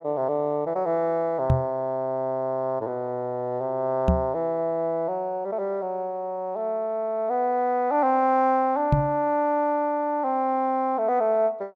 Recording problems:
microphone thump; at 1.5 s, at 4 s and at 9 s; peak +7 dB vs average level

